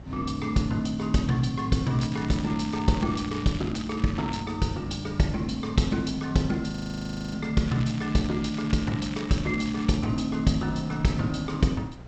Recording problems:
lossy compression; G.722, log-spectral distance 4 dB, nothing above 7.3 kHz
hum; 60 Hz, harmonics up to 780 Hz, SNR 20 dB
wind on the microphone; below 630 Hz, SNR 21 dB
crackling; from 2 to 4.5 s and from 7.5 to 10 s; loose cable, SNR 17 dB
frozen audio; at 6.5 s for 0.5 s

